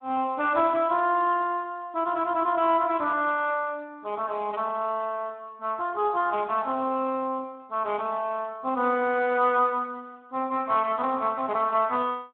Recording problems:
phone line; 220 Hz to 3.9 kHz, Speex

